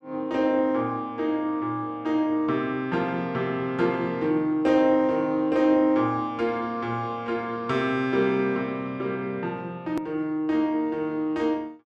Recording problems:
hard cut with a click; at 10 s

